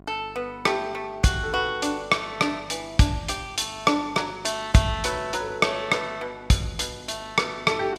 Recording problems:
hum; 50 Hz, harmonics up to 1.4 kHz, SNR 24 dB

